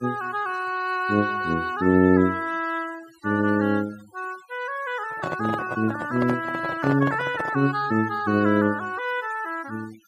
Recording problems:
denoising artefacts; signal-to-artefact ratio 21 dB
handling noise; from 5 to 7.5 s; peak -1 dB vs average level

